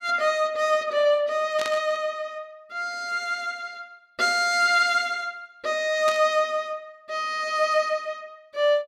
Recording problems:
burst of static; at 1.5 s and at 6 s; peak -5 dB vs average level

